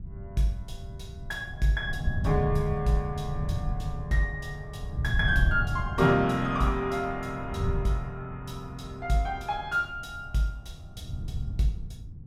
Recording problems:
wind noise; below 120 Hz, SNR 6 dB

